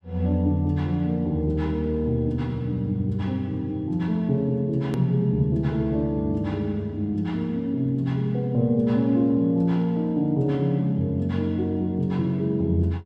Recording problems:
click at an edit; at 5 s

